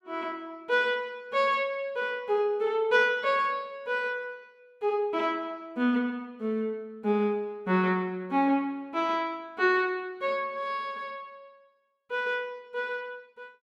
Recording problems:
none

